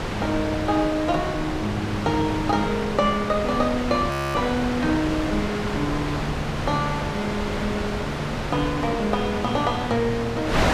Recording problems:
wind noise; below 1.5 kHz, SNR 3 dB
audio freezing; at 4 s

